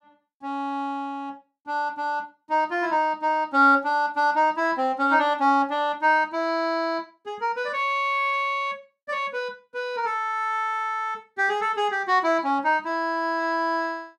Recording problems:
none

